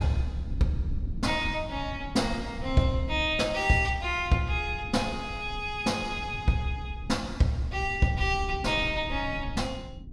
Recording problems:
low-frequency rumble; below 120 Hz, SNR 11 dB

